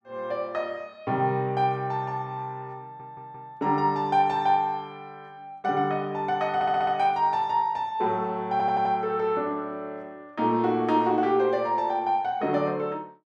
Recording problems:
stutter; at 3 s, at 6.5 s and at 8.5 s

